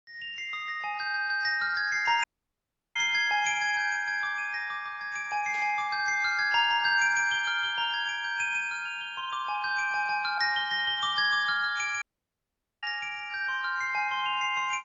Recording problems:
lossy compression; AAC, log-spectral distance 2 dB, nothing above 6.7 kHz
dropout; at 2 s for 0.5 s and at 12 s for 1 s
static burst; at 5.5 s; peak -15 dB vs average level

